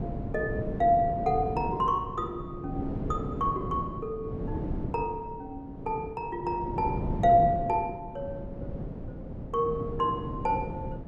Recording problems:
wind noise; below 300 Hz, SNR 7 dB

